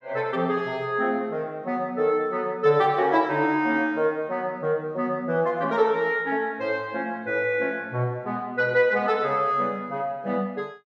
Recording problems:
none

